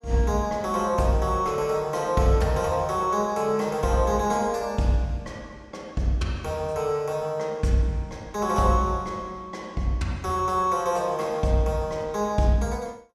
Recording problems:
none

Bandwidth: 15 kHz